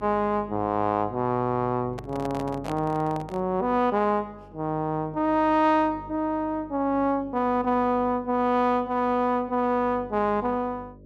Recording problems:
hum; 50 Hz, harmonics up to 600 Hz, SNR 21 dB
microphone handling noise; from 2 to 3.5 s; peak -6 dB vs average level

